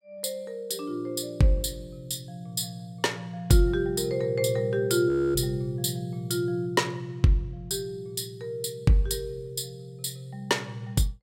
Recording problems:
audio freezing; at 5 s

